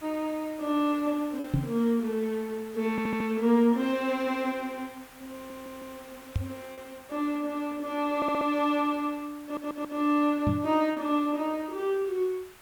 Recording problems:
background hiss; SNR 22 dB
packet loss; 1.1% of the sound replaced, filled with repeated pitch periods
microphone bump; at 1.5 s, at 6.5 s and at 10 s; peak +5 dB vs average level
stutter; 4 times, first at 3 s

